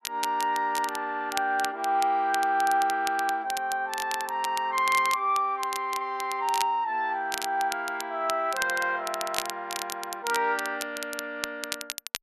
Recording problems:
crackle; vinyl, SNR 10 dB

